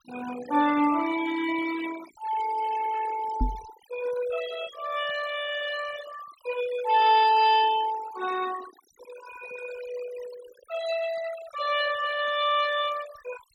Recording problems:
denoising artefacts; signal-to-artefact ratio 13 dB
microphone thump; at 3.5 s; peak +2 dB vs average level

